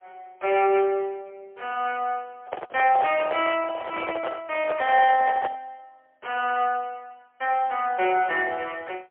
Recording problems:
telephone audio; 300 Hz to 3.4 kHz, AMR-NB, then MP3
handling noise; from 2.5 to 5.5 s; peak -2 dB vs average level

